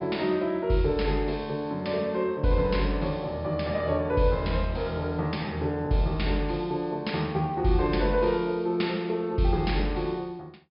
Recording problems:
low-pass filter; nothing above 5.5 kHz

